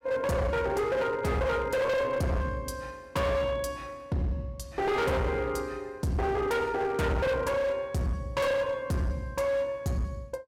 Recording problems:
distorted audio; hard clipping, signal-to-distortion ratio 7 dB

